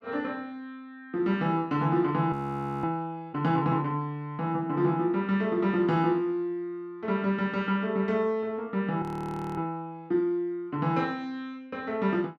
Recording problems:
frozen audio; at 2.5 s for 0.5 s and at 9 s for 0.5 s

